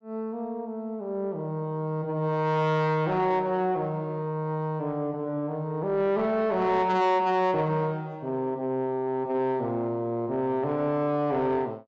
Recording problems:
low-pass filter; nothing above 7.5 kHz
distortion; soft clipping, signal-to-distortion ratio 11 dB

